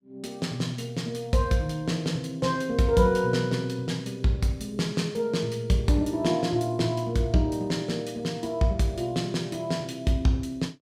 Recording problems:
none

